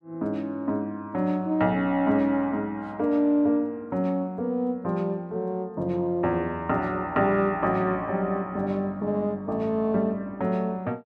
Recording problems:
none

